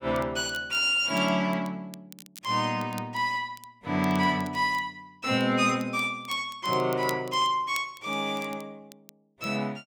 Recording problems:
crackling; vinyl, SNR 21 dB

